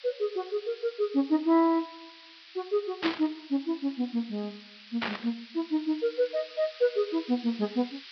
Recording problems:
treble missing; nothing above 5.5 kHz
background hiss; SNR 17 dB
burst of static; at 3 s and at 5 s; peak +3 dB vs average level

